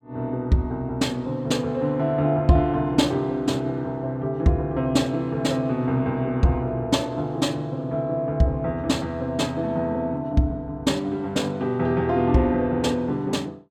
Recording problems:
none

